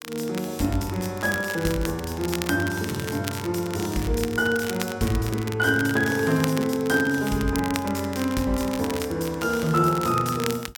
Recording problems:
crackle; vinyl, SNR 12 dB

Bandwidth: 17 kHz